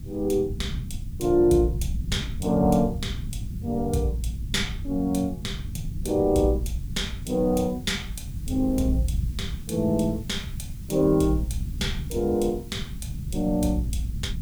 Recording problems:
hiss; slope +1 dB per octave, SNR 26 dB
low-frequency rumble; below 140 Hz, SNR 8 dB

